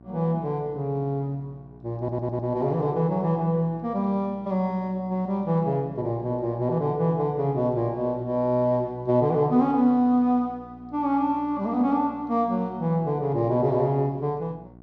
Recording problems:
hum; 60 Hz, harmonics up to 1.1 kHz, SNR 23 dB
audio stuttering; at 2 s

